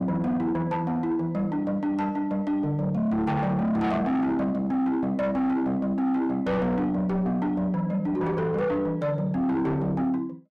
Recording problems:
distortion; soft clipping, signal-to-distortion ratio 8 dB

